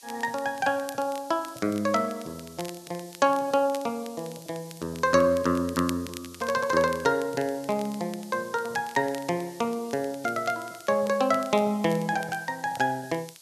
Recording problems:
hiss; SNR 21 dB
crackle; vinyl, SNR 20 dB

